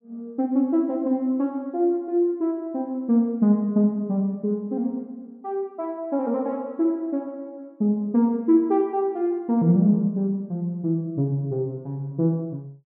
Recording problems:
none

